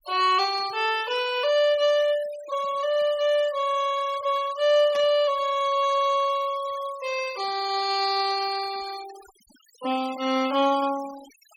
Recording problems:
denoising artefacts; signal-to-artefact ratio 19 dB
burst of static; at 5 s; peak -12 dB vs average level

